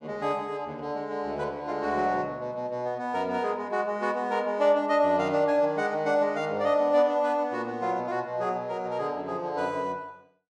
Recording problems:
none

